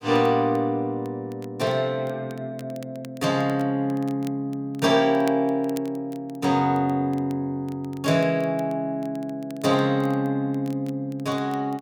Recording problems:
crackling; vinyl, SNR 26 dB

